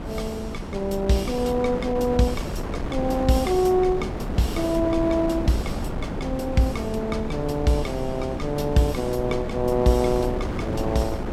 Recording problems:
wind noise; below 430 Hz, SNR 6 dB

